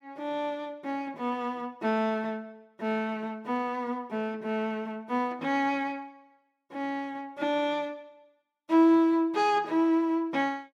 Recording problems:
none

